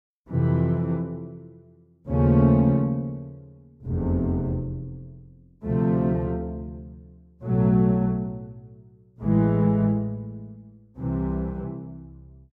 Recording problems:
none

